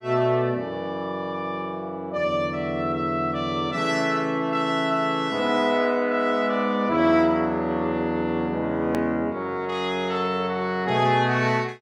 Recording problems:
hard cut with a click; at 9 s

